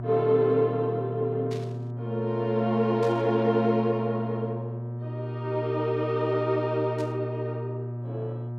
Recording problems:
electrical hum; 60 Hz, harmonics up to 960 Hz, SNR 7 dB
burst of static; at 1.5 s, at 3 s and at 7 s; peak -13 dB vs average level

